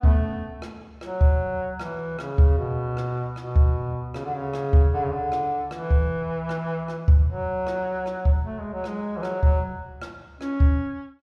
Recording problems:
none

